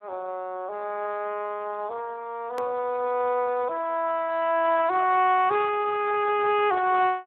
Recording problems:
telephone audio; 340 Hz to 3.3 kHz, Speex
edit click; at 2.5 s

